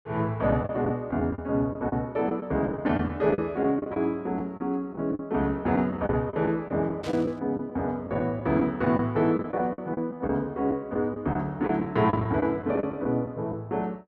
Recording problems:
lost packets; 9% of the sound replaced, filled with the last packet
burst of static; at 7 s; peak -9 dB vs average level

